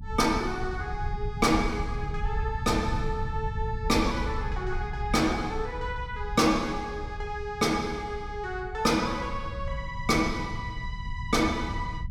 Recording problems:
low-frequency rumble; below 98 Hz, SNR 7 dB

